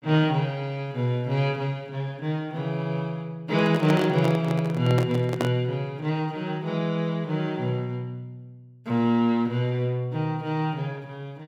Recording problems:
microphone handling noise; from 3.5 to 5.5 s; peak +2 dB vs average level

